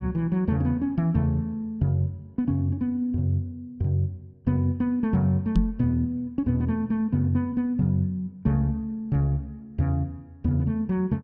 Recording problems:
microphone bump; at 5.5 s; peak +6 dB vs average level

